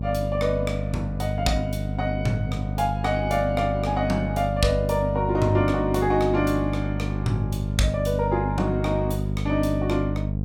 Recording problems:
hum; 50 Hz, harmonics up to 500 Hz, SNR 2 dB

